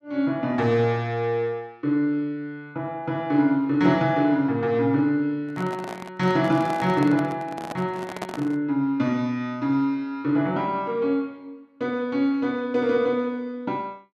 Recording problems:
handling noise; from 5.5 to 8.5 s; peak -3 dB vs average level

